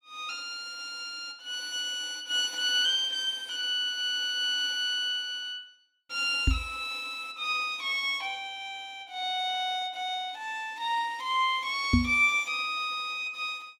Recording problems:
knock on the microphone; at 6.5 s and at 12 s; peak +9 dB vs average level

